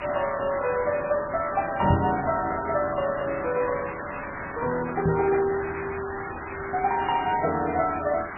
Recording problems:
codec artefacts; MP3, log-spectral distance 16 dB, nothing above 2.4 kHz
hiss; SNR 9 dB
microphone thump; at 2 s and at 5 s; peak +5 dB vs average level

